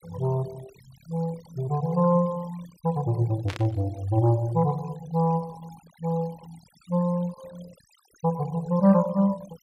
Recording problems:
denoising artefacts; signal-to-artefact ratio 22 dB
burst of static; at 3.5 s; peak -6 dB vs average level

